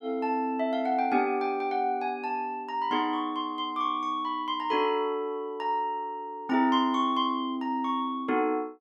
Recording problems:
none

